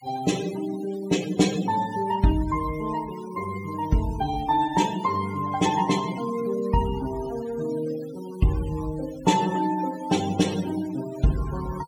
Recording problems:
noise reduction artefacts; signal-to-artefact ratio 15 dB

